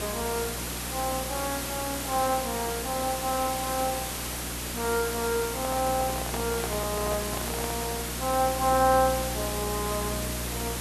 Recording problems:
hum; 60 Hz, harmonics up to 360 Hz, SNR 9 dB
background hiss; slope -2 dB per octave, SNR 3 dB
microphone handling noise; from 5.5 to 8 s; peak -1 dB vs average level

